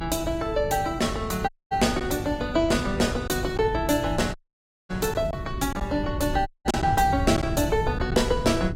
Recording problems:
codec artefacts; AAC, log-spectral distance 3 dB, nothing above 15.5 kHz
hum; 50 Hz, harmonics up to 400 Hz, SNR 14 dB
wind noise; below 140 Hz, SNR 9 dB
packet loss; 2% of the sound replaced, filled with silence
audio cutting out; at 1.5 s, at 4.5 s for 0.5 s and at 6.5 s

